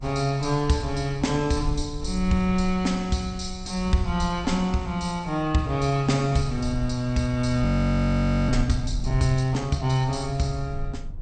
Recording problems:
lossy codec; MP2, log-spectral distance 3 dB, nothing above 8.5 kHz
rumble; below 60 Hz, SNR 10 dB
frozen audio; at 7.5 s for 1 s

